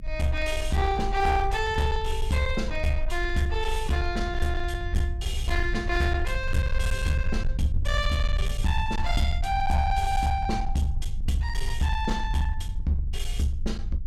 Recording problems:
distorted audio; hard clipping, uneven, signal-to-distortion ratio 11 dB
rumble; below 62 Hz, strongest tone 20 Hz, SNR 4 dB

